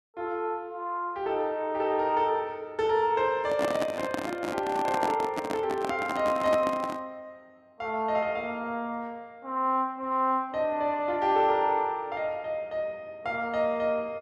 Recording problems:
microphone handling noise; from 3.5 to 7 s; peak +1 dB vs average level

